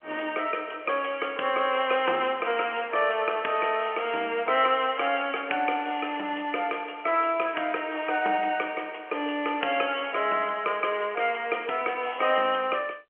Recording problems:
telephone audio; 320 Hz to 3.2 kHz, G.711

